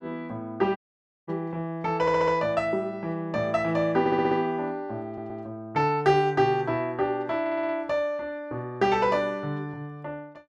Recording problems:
audio cutting out; at 1 s for 0.5 s
audio stuttering; 4 times, first at 2 s

